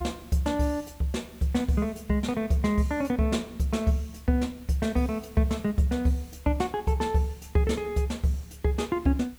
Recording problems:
background hiss; SNR 25 dB

